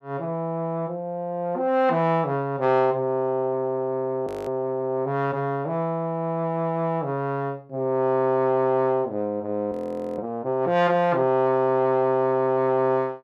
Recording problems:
audio freezing; at 4.5 s and at 9.5 s

